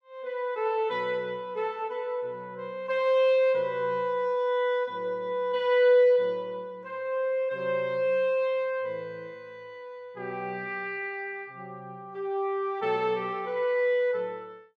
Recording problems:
none

